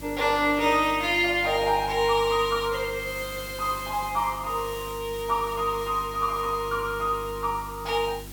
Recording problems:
mains hum; 50 Hz, harmonics up to 350 Hz, SNR 17 dB
hiss; slope -1 dB per octave, SNR 17 dB

